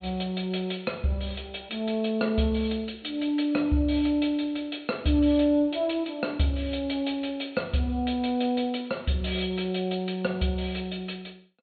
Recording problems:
low-pass filter; nothing above 4.4 kHz

